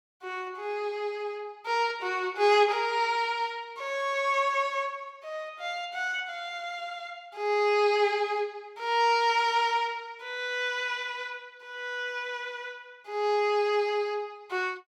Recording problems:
none

